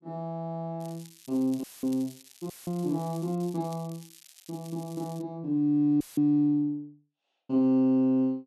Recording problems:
crackling; from 1 to 5 s; loose cable, SNR 23 dB
audio cutting out; at 1.5 s, at 2.5 s and at 6 s; filled with static

